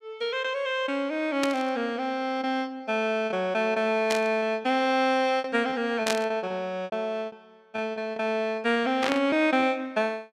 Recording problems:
lost packets; 7% of the sound replaced, filled with repeated pitch periods
static burst; 4 times, first at 1.5 s; peak +2 dB vs average level

